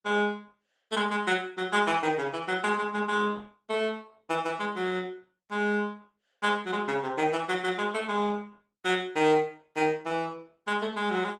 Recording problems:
lossy compression; Opus, log-spectral distance 3 dB, nothing above 15.5 kHz

